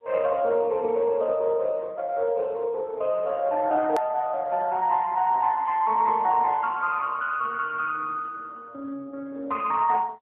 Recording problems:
telephone audio; 320 Hz to 3.1 kHz, AMR-NB
click at an edit; at 4 s

